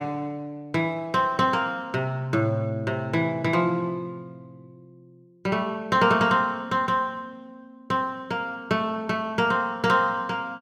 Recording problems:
none

